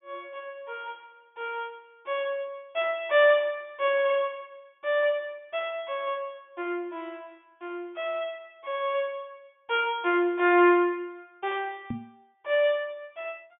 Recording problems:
treble missing; nothing above 3.5 kHz
microphone thump; at 12 s; peak -2 dB vs average level

